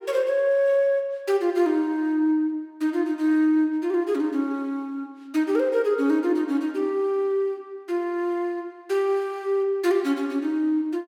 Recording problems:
none

